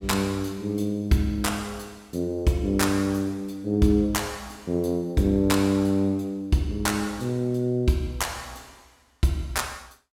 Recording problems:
none

